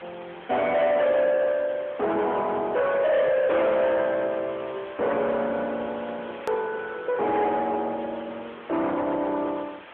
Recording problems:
phone line; 260 Hz to 3.7 kHz, AMR-NB
distortion; soft clipping, signal-to-distortion ratio 7 dB
hiss; SNR 19 dB
hard cut with a click; at 6.5 s

